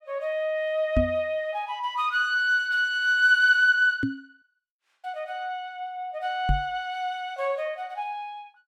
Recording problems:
microphone thump; at 1 s, at 4 s and at 6.5 s; peak +3 dB vs average level

